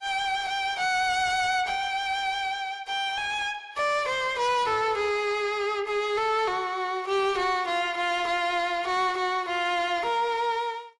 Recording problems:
codec artefacts; AAC, log-spectral distance 2 dB
distortion; soft clipping, signal-to-distortion ratio 10 dB

